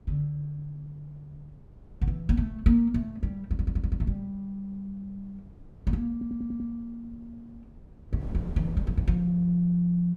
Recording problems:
wind on the microphone; below 180 Hz, SNR 17 dB
audio stuttering; at 3.5 s and at 6 s

